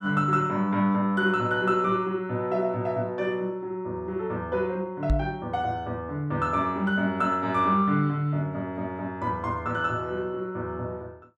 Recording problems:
microphone thump; at 5 s; peak +5 dB vs average level

